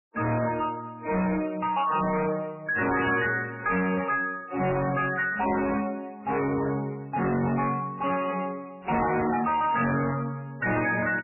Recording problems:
lossy codec; MP3, log-spectral distance 5 dB, nothing above 2.6 kHz
distortion; soft clipping, signal-to-distortion ratio 7 dB

